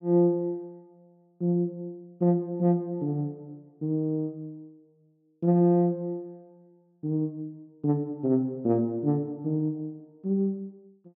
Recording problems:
none

